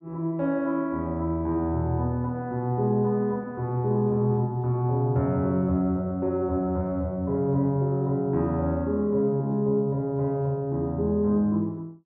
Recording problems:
none

